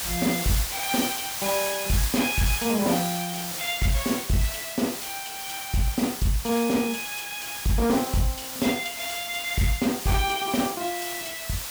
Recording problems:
distortion; hard clipping, signal-to-distortion ratio 12 dB
background hiss; slope +1 dB per octave, SNR 4 dB

